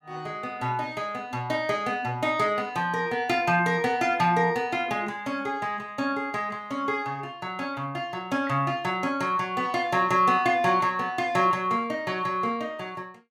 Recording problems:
none

